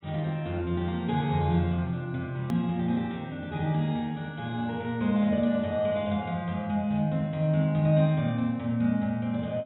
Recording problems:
low-pass filter; nothing above 3.8 kHz
edit click; at 2.5 s

